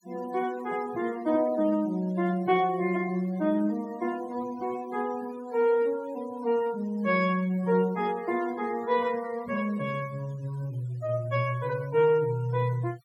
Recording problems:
noise reduction artefacts; signal-to-artefact ratio 22 dB

